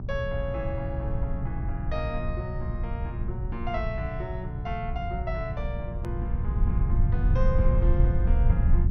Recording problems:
treble cut off; nothing above 6.3 kHz
hum; 60 Hz, harmonics up to 600 Hz, SNR 3 dB
rumble; below 90 Hz, SNR -6 dB
edit click; at 6 s

